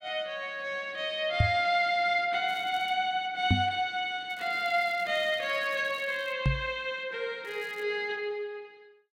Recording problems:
knock on the microphone; at 1.5 s, at 3.5 s and at 6.5 s; peak +8 dB vs average level
crackling; at 2.5 s, from 4.5 to 6.5 s and at 7.5 s; loose cable, SNR 26 dB

